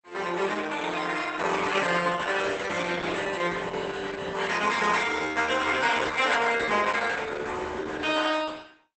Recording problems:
lossy codec; Opus, log-spectral distance 6 dB, nothing above 8.2 kHz

